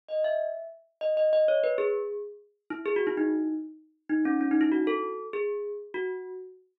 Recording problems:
none

